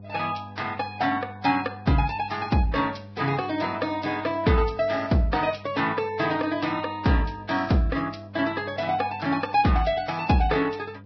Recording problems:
codec artefacts; Vorbis, log-spectral distance 4 dB, nothing above 5.7 kHz
hum; 50 Hz, harmonics up to 700 Hz, SNR 19 dB

